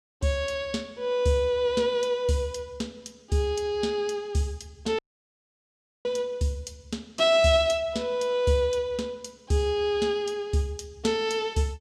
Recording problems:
audio cutting out; at 5 s for 1 s

